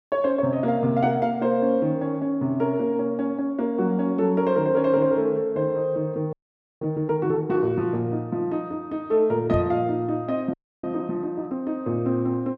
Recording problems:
audio freezing; at 6.5 s and at 11 s
microphone bump; at 9.5 s; peak 0 dB vs average level

